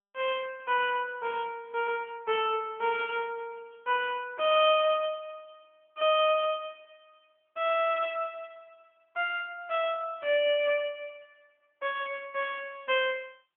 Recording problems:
phone line; 340 Hz to 3.4 kHz, AMR-NB

